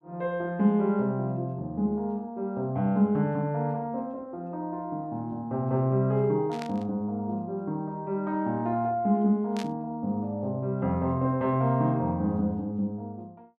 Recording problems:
static burst; at 6.5 s and at 9.5 s; peak -7 dB vs average level

